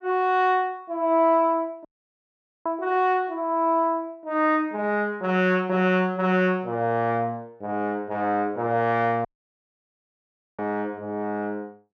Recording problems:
dropout; at 2 s for 1 s and at 9.5 s for 1.5 s

